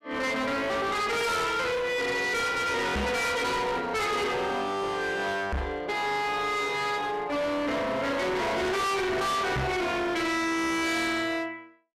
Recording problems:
distorted audio; hard clipping, uneven, signal-to-distortion ratio 5 dB
knock on the microphone; at 3 s, at 5.5 s and at 9.5 s; peak +2 dB vs average level

